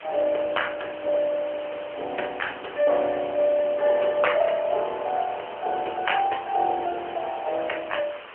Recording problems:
phone line; 340 Hz to 3.1 kHz, AMR-NB
hiss; SNR 15 dB

